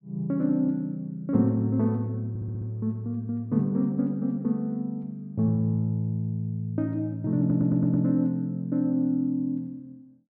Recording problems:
stutter; at 2.5 s and at 7.5 s

